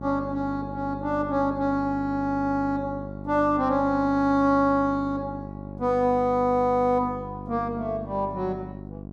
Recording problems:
hum; 50 Hz, harmonics up to 1.1 kHz, SNR 12 dB

